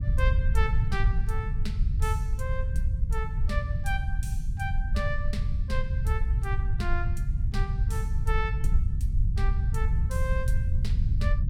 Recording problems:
rumble; below 82 Hz, SNR -7 dB

